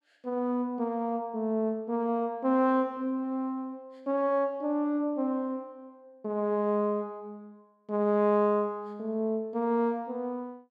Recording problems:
none

